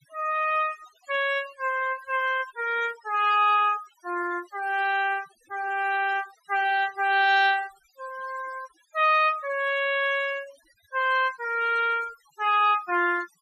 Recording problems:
denoising artefacts; signal-to-artefact ratio 20 dB

